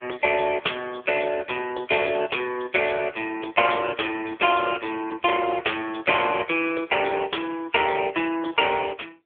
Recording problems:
telephone audio; 300 Hz to 3.3 kHz, AMR-NB

